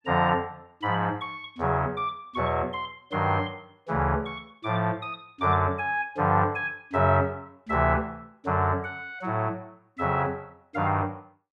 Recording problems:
none

